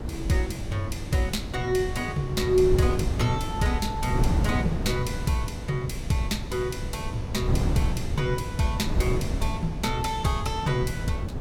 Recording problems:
wind on the microphone; below 170 Hz, SNR 3 dB

